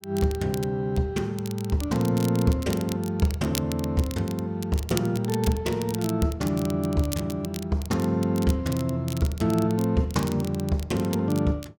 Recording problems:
crackling; vinyl, SNR 14 dB

